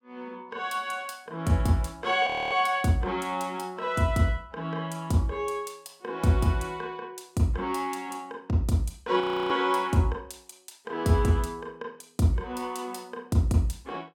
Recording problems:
frozen audio; at 2.5 s and at 9 s

